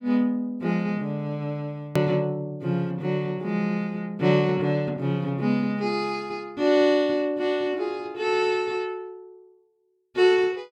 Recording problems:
click at an edit; at 2 s

